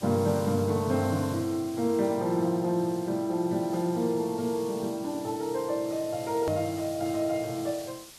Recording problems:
hiss; slope +1 dB per octave, SNR 17 dB
hard cut with a click; at 6.5 s

